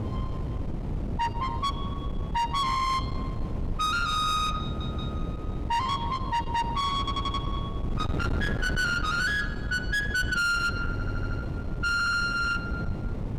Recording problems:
distorted audio; soft clipping, signal-to-distortion ratio 10 dB
wind noise; below 260 Hz, SNR 6 dB
audio stuttering; 4 times, first at 4.5 s

